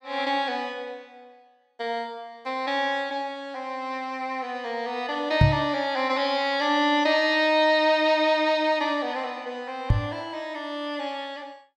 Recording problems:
knock on the microphone; at 5.5 s and at 10 s; peak +10 dB vs average level

